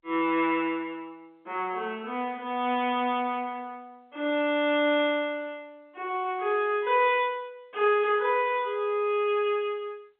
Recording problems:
phone line; 260 Hz to 3.6 kHz, G.711

